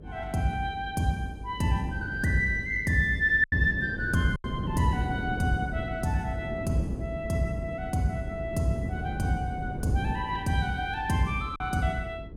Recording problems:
electrical hum; 50 Hz, harmonics up to 450 Hz, SNR 18 dB
wind noise; below 270 Hz, SNR 9 dB
packet loss; 1.6% of the sound replaced, filled with silence

